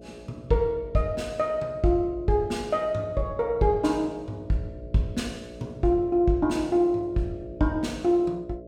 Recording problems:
hum; 60 Hz, harmonics up to 660 Hz, SNR 18 dB

